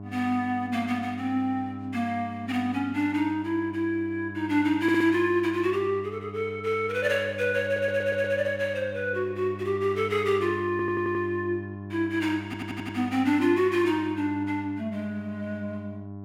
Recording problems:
hum; 50 Hz, harmonics up to 1.1 kHz, SNR 13 dB
stutter; 4 times, first at 5 s

